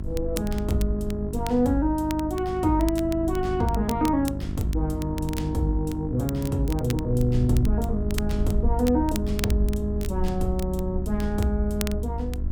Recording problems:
electrical hum; 50 Hz, harmonics up to 700 Hz, SNR 8 dB
rumble; below 68 Hz, SNR 7 dB
crackling; vinyl, SNR 15 dB

